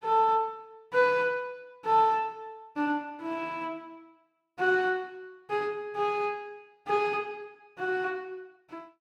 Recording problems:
none

